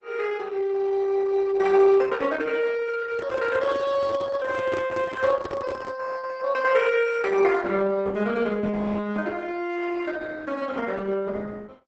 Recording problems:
lossy compression; Opus, log-spectral distance 3 dB, nothing above 8 kHz
microphone handling noise; from 3 to 6 s; peak -4 dB vs average level

